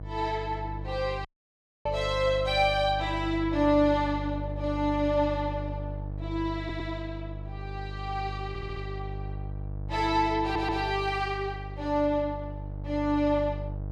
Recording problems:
mains hum; 50 Hz, harmonics up to 650 Hz, SNR 8 dB
dropout; at 1.5 s for 0.5 s
stutter; at 6.5 s, at 8.5 s and at 10 s

